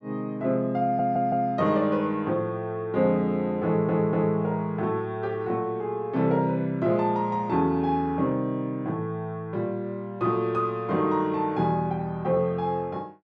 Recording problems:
stutter; at 1 s and at 3.5 s

